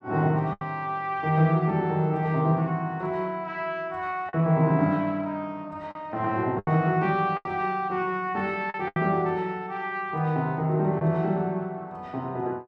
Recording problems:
lost packets; 4% of the sound replaced, filled with the last packet

